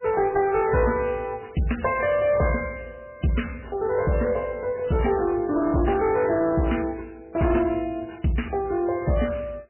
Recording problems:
lossy compression; MP3, log-spectral distance 4 dB, nothing above 3 kHz
distorted audio; hard clipping, uneven, signal-to-distortion ratio 11 dB

